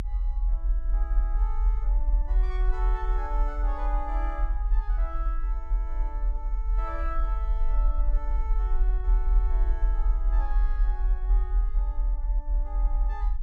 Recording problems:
rumble; below 44 Hz, strongest tone 38 Hz, SNR -12 dB

